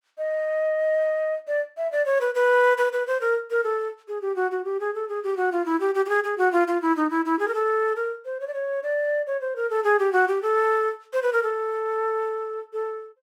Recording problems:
none

